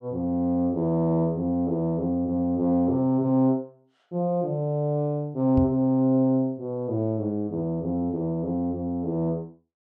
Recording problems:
microphone bump; at 5.5 s; peak +1 dB vs average level

